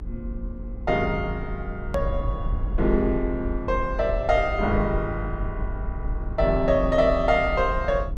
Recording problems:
electrical hum; 60 Hz, harmonics up to 480 Hz, SNR 18 dB
low-frequency rumble; below 64 Hz, strongest tone 44 Hz, SNR 7 dB
click at an edit; at 2 s

